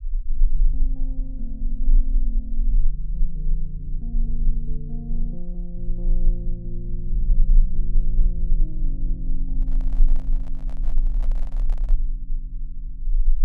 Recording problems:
low-frequency rumble; below 30 Hz, strongest tone 26 Hz, SNR -11 dB
handling noise; from 9.5 to 12 s; peak -3 dB vs average level

